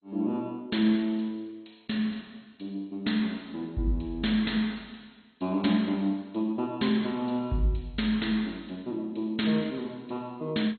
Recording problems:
lossy codec; MP2, log-spectral distance 5 dB, nothing above 4.2 kHz

